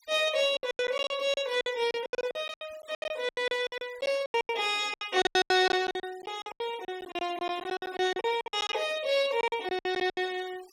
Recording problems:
noise reduction artefacts; signal-to-artefact ratio 21 dB
packet loss; 21% of the sound replaced, filled with silence

